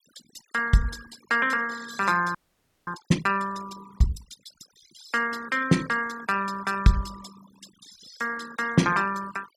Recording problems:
noise reduction artefacts; signal-to-artefact ratio 17 dB
audio freezing; at 2.5 s for 0.5 s

